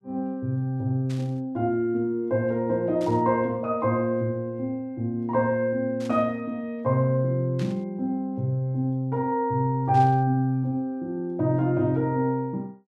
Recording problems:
static burst; 5 times, first at 1 s; peak -13 dB vs average level

